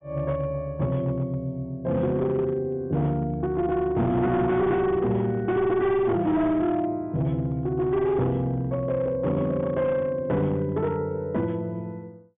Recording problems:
treble cut off; nothing above 3.6 kHz
distorted audio; hard clipping, uneven, signal-to-distortion ratio 12 dB

